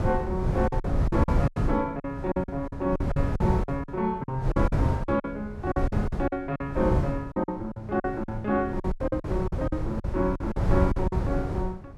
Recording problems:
wind noise; below 160 Hz, SNR 1 dB
packet loss; 14% of the sound replaced, filled with silence

